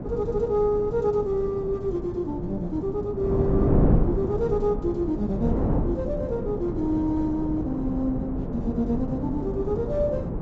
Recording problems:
low-pass filter; nothing above 8 kHz
wind noise; below 300 Hz, SNR 2 dB

